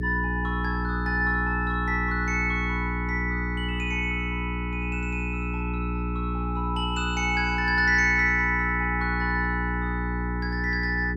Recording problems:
hum; 60 Hz, harmonics up to 420 Hz, SNR 4 dB

